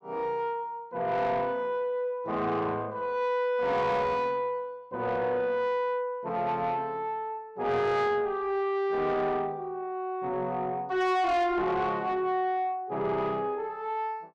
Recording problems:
distorted audio; soft clipping, signal-to-distortion ratio 10 dB

